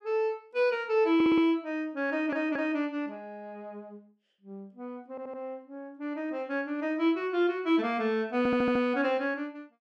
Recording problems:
audio stuttering; 4 times, first at 1 s

